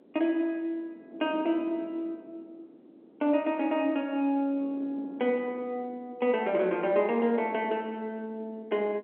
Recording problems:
phone line; 240 Hz to 3.2 kHz, G.711
wind on the microphone; below 430 Hz, SNR 20 dB

